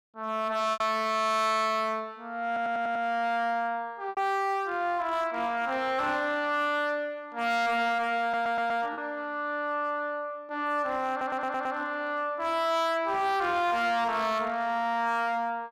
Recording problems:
distortion; hard clipping, uneven, signal-to-distortion ratio 10 dB
packet loss; 1.4% of the sound replaced, filled with repeated pitch periods
stutter; at 2.5 s, at 8 s and at 11 s

